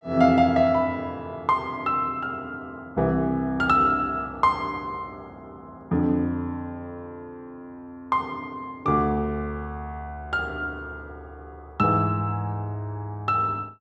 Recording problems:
none

